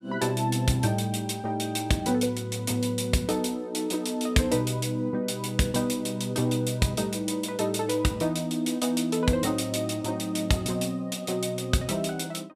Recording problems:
none

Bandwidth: 15 kHz